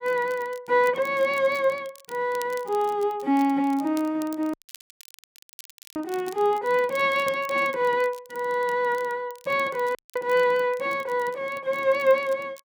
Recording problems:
crackling; vinyl, SNR 23 dB
audio cutting out; at 4.5 s for 1.5 s and at 10 s

